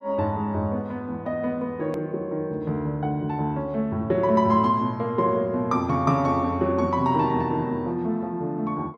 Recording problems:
click at an edit; at 2 s

